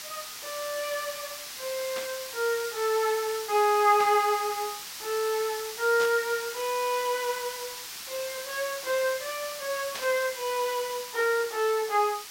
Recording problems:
hiss; slope +3 dB per octave, SNR 9 dB
static burst; 4 times, first at 2 s; peak -4 dB vs average level

